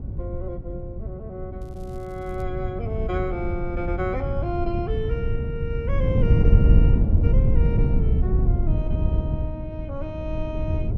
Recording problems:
wind noise; below 110 Hz, SNR -8 dB
crackling; at 1.5 s; loose cable, SNR 27 dB

